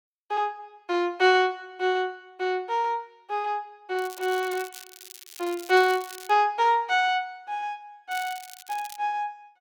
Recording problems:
crackling; from 4 to 6.5 s and at 8 s; loose cable, SNR 17 dB

